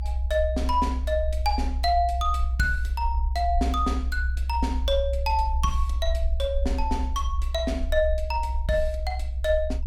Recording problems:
rumble; below 64 Hz, strongest tone 64 Hz, SNR 1 dB

